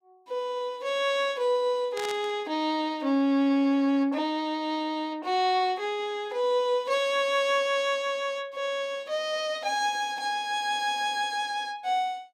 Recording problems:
burst of static; at 2 s; peak -6 dB vs average level

